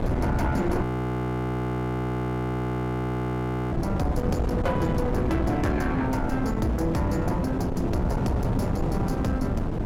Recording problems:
distortion; soft clipping, signal-to-distortion ratio 11 dB
wind noise; below 340 Hz, SNR 0 dB
audio freezing; at 1 s for 3 s

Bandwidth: 16.5 kHz